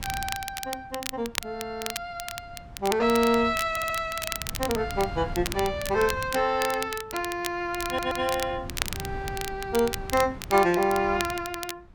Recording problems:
wind noise; below 190 Hz, SNR 15 dB
crackle; vinyl, SNR 9 dB
stutter; at 3.5 s and at 8 s

